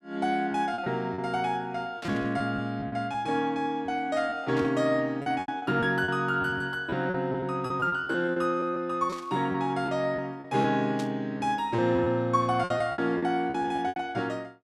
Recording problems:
packet loss; 11% of the sound replaced, filled with repeated pitch periods
static burst; 4 times, first at 2 s; peak -8 dB vs average level

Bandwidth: 14 kHz